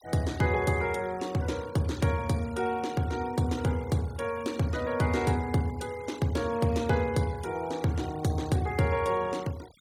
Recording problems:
noise reduction artefacts; signal-to-artefact ratio 20 dB

